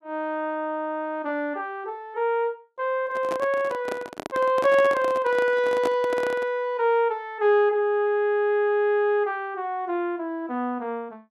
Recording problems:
handling noise; from 3 to 6.5 s; peak -1 dB vs average level

